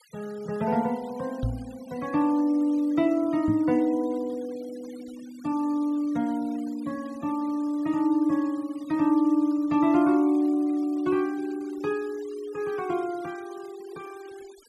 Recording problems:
denoising artefacts; signal-to-artefact ratio 25 dB
knock on the microphone; at 1.5 s and at 3.5 s; peak +1 dB vs average level

